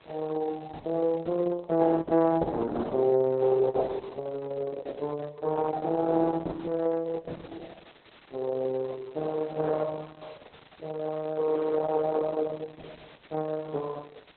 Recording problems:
lossy compression; Opus, log-spectral distance 10 dB
background hiss; SNR 27 dB

